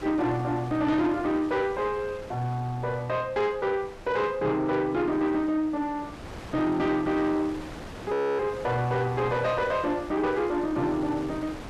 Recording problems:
distortion; soft clipping, signal-to-distortion ratio 11 dB
wind noise; below 1.3 kHz, SNR 15 dB
frozen audio; at 8 s

